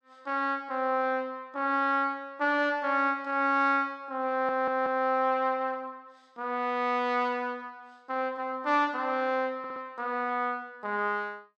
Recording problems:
audio stuttering; at 4.5 s and at 9.5 s

